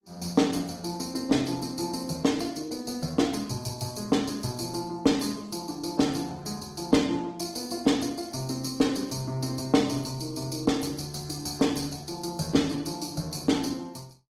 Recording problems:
lossy compression; Opus, log-spectral distance 5 dB, nothing above 18.9 kHz

